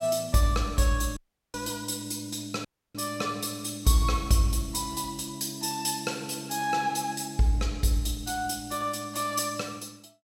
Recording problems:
audio cutting out; at 1 s and at 2.5 s

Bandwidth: 16.5 kHz